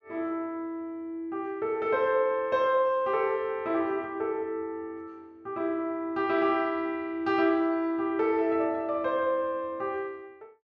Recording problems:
none

